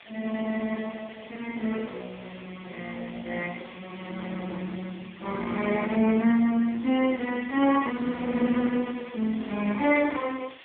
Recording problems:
telephone audio; 170 Hz to 3.5 kHz, AMR-NB
background hiss; SNR 21 dB

